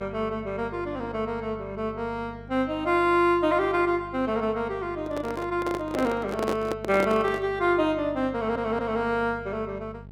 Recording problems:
hum; 50 Hz, harmonics up to 850 Hz, SNR 18 dB
handling noise; from 5 to 7.5 s; peak +1 dB vs average level
stutter; at 8.5 s

